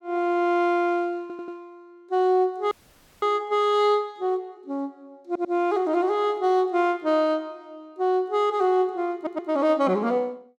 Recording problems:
stutter; at 1 s, at 5.5 s and at 9 s
frozen audio; at 2.5 s for 0.5 s

